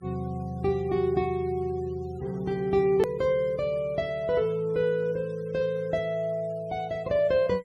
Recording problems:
noise reduction artefacts; signal-to-artefact ratio 27 dB
hard cut with a click; at 3 s

